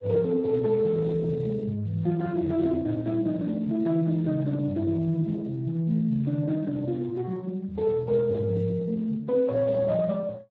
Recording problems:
lossy codec; Speex, log-spectral distance 2 dB

